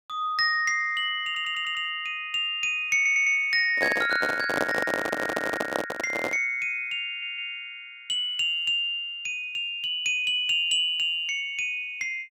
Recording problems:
audio stuttering; 4 times, first at 1.5 s
microphone handling noise; from 4 to 6.5 s; peak +2 dB vs average level

